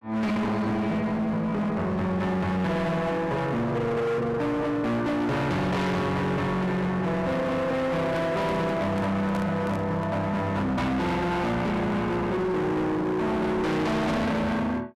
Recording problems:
distorted audio; hard clipping, signal-to-distortion ratio 6 dB
microphone handling noise; from 8 to 10 s; peak -3 dB vs average level

